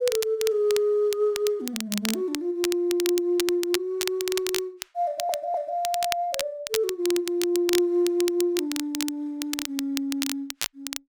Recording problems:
crackle; vinyl, SNR 7 dB
audio stuttering; at 5 s

